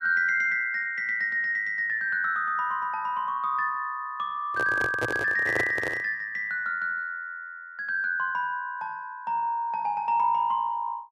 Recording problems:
microphone handling noise; from 4.5 to 6 s; peak +1 dB vs average level

